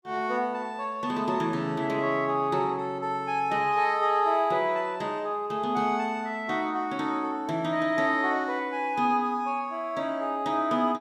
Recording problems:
none

